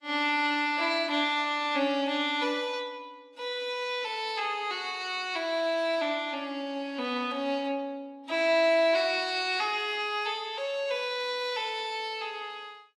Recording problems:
codec artefacts; AAC, log-spectral distance 2 dB

